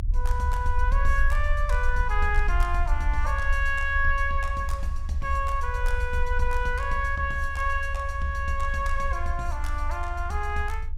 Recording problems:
low-frequency rumble; below 54 Hz, strongest tone 20 Hz, SNR 1 dB

